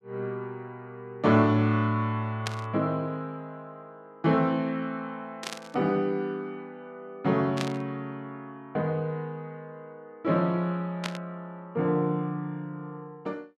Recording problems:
static burst; 4 times, first at 2.5 s; peak +1 dB vs average level

